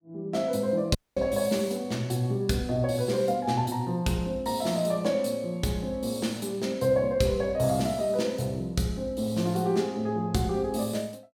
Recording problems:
dropout; at 1 s

